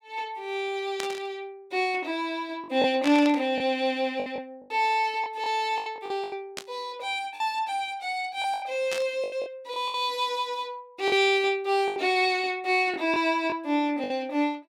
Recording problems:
lost packets; 7% of the sound replaced, filled with the last packet
burst of static; 4 times, first at 1 s; peak -1 dB vs average level

